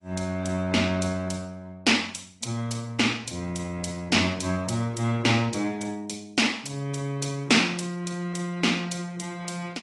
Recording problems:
codec artefacts; AAC, log-spectral distance 4 dB, nothing above 10.4 kHz

